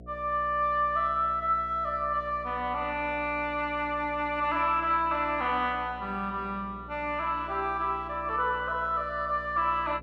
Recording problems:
mains hum; 60 Hz, harmonics up to 720 Hz, SNR 18 dB

